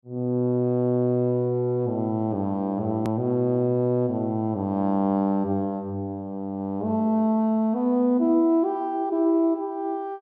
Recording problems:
hard cut with a click; at 3 s

